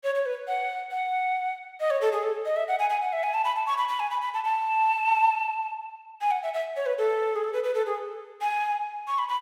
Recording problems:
none

